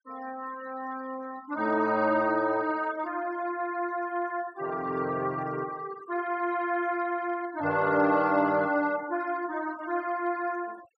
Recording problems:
denoising artefacts; signal-to-artefact ratio 21 dB

